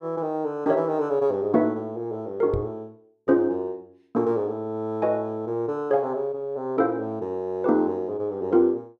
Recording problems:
microphone thump; at 2.5 s; peak -1 dB vs average level

